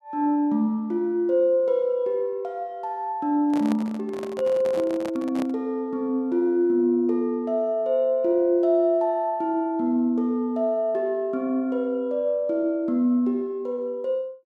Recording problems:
microphone handling noise; from 3.5 to 5.5 s; peak -6 dB vs average level

